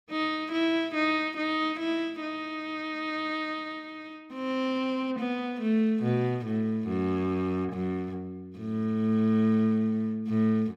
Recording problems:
none

